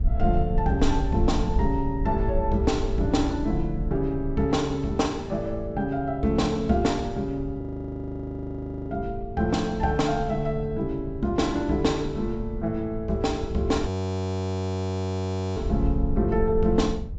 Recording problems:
treble cut off; nothing above 8 kHz
low-frequency rumble; below 96 Hz, SNR 11 dB
wind noise; below 80 Hz, SNR 8 dB
audio freezing; at 7.5 s for 1.5 s and at 14 s for 1.5 s

